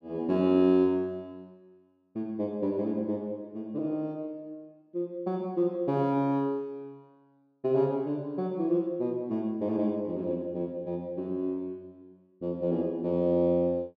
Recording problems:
none

